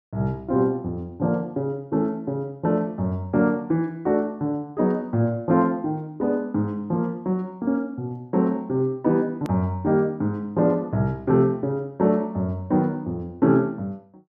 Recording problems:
edit click; at 9.5 s

